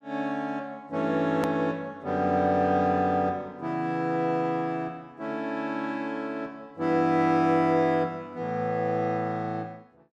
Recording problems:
edit click; at 1.5 s

